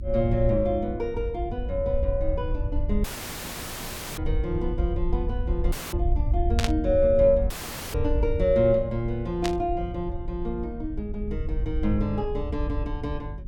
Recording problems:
electrical hum; 50 Hz, harmonics up to 400 Hz, SNR 16 dB
low-frequency rumble; below 74 Hz, SNR 4 dB
audio cutting out; at 3 s for 1 s, at 5.5 s and at 7.5 s; filled with static
static burst; at 6.5 s and at 9.5 s; peak +2 dB vs average level

